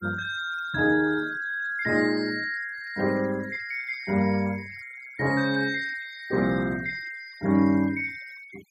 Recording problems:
noise reduction artefacts; signal-to-artefact ratio 21 dB

